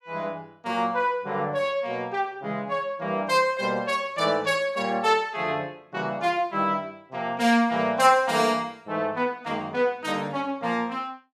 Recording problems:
none

